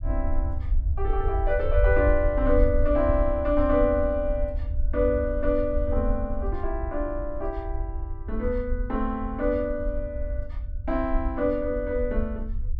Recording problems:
rumble; below 64 Hz, SNR 4 dB

